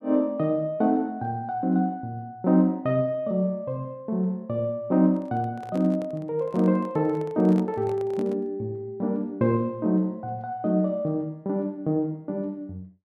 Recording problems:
handling noise; from 5 to 8.5 s; peak -10 dB vs average level

